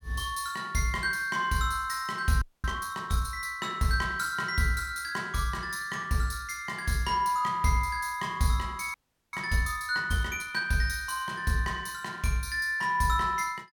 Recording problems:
frozen audio; at 2.5 s and at 9 s

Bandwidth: 17.5 kHz